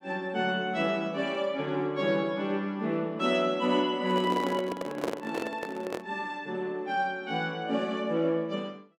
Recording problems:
microphone handling noise; from 4 to 6 s; peak +1 dB vs average level

